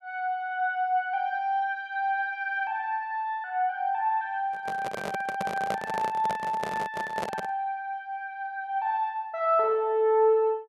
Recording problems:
handling noise; from 4.5 to 7.5 s; peak 0 dB vs average level

